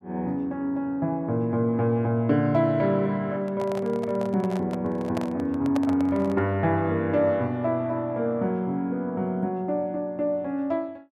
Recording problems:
microphone handling noise; from 3.5 to 6.5 s; peak -3 dB vs average level

